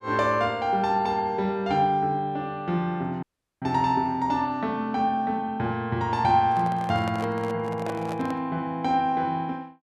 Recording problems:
dropout; at 3 s
microphone handling noise; from 6.5 to 8.5 s; peak -6 dB vs average level

